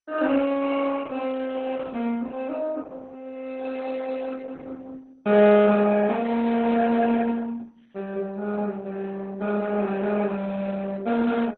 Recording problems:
lossy codec; Opus, then MP2, log-spectral distance 4 dB

